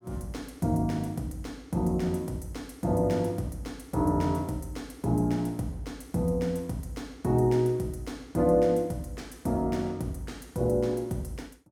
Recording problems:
none

